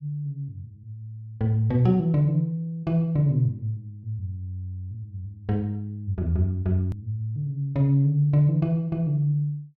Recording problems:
click at an edit; at 7 s

